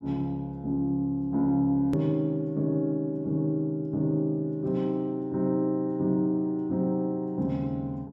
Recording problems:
hard cut with a click; at 2 s

